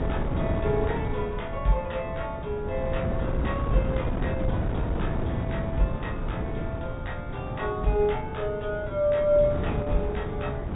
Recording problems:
treble cut off; nothing above 4 kHz
wind on the microphone; below 280 Hz, SNR 2 dB

